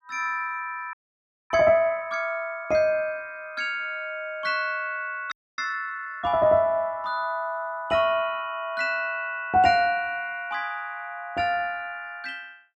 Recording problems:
audio freezing; at 1 s for 0.5 s and at 5.5 s

